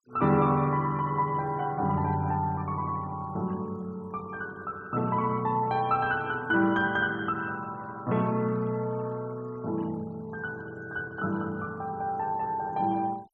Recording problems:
denoising artefacts; signal-to-artefact ratio 26 dB

